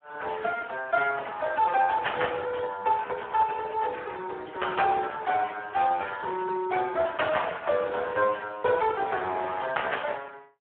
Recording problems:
telephone audio; 340 Hz to 3.3 kHz, Speex

